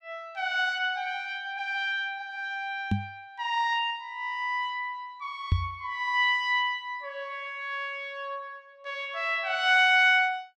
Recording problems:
microphone thump; at 3 s and at 5.5 s; peak +6 dB vs average level

